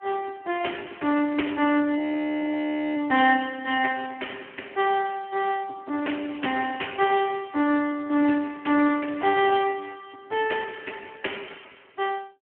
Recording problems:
telephone audio; 240 Hz to 3.2 kHz, Speex
audio freezing; at 2 s for 1 s

